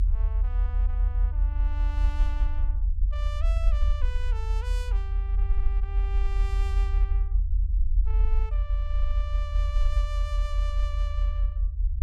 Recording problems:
low-frequency rumble; below 48 Hz, strongest tone 44 Hz, SNR -15 dB

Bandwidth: 15.5 kHz